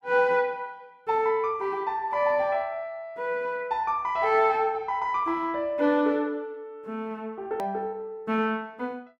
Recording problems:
hard cut with a click; at 7.5 s

